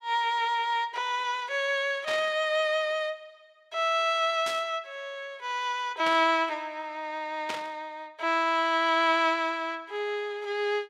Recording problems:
static burst; 4 times, first at 2 s; peak -3 dB vs average level

